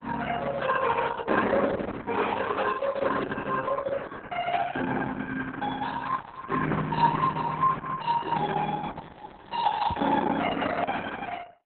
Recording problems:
lossy codec; Opus, then Opus, log-spectral distance 5 dB, nothing above 4 kHz
crackle; at 2.5 s, at 6 s and from 9 to 10 s; loose cable, SNR 27 dB
knock on the microphone; at 10 s; peak +6 dB vs average level

